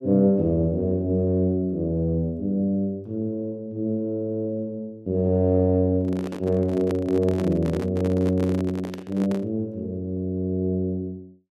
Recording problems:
handling noise; from 6 to 9.5 s; peak -3 dB vs average level

